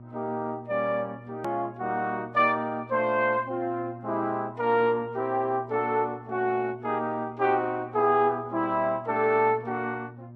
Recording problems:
codec artefacts; Vorbis, log-spectral distance 2 dB
hum; 60 Hz, harmonics up to 720 Hz, SNR 18 dB
click at an edit; at 1.5 s

